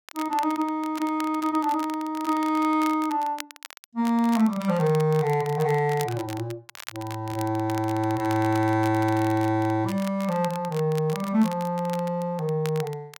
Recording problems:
crackle; vinyl, SNR 17 dB

